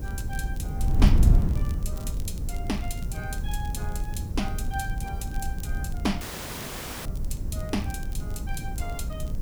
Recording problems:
hum; 60 Hz, harmonics up to 600 Hz, SNR 13 dB
hiss; SNR 19 dB
wind on the microphone; below 92 Hz, SNR -6 dB
crackling; vinyl, SNR 17 dB
audio cutting out; at 6 s for 1 s

